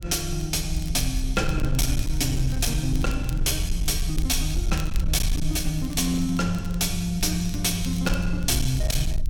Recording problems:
distorted audio; hard clipping, signal-to-distortion ratio 12 dB
rumble; below 60 Hz, SNR 5 dB
crackle; vinyl, SNR 20 dB

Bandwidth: 17 kHz